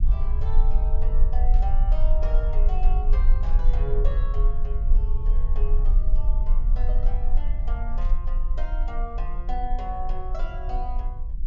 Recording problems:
treble cut off; nothing above 7 kHz
rumble; below 38 Hz, strongest tone 20 Hz, SNR -12 dB
static burst; at 1.5 s, at 3.5 s and at 8 s; peak -12 dB vs average level

